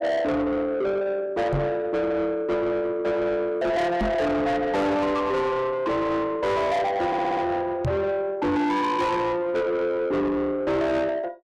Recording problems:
distortion; soft clipping, signal-to-distortion ratio 8 dB
knock on the microphone; at 1.5 s, at 4 s and at 8 s; peak +3 dB vs average level
audio stuttering; at 7 s

